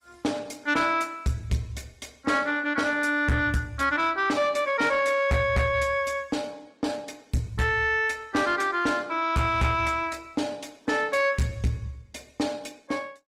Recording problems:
lossy compression; Opus, log-spectral distance 3 dB, nothing above 18.3 kHz
distorted audio; soft clipping, signal-to-distortion ratio 11 dB

